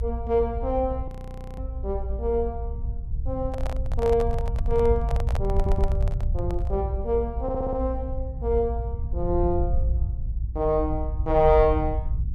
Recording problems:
rumble; below 74 Hz, SNR 3 dB
frozen audio; at 1 s for 0.5 s
microphone handling noise; from 3.5 to 7 s; peak -4 dB vs average level
audio stuttering; at 5.5 s and at 7.5 s

